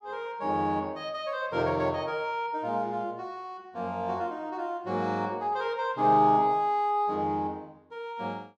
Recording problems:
none

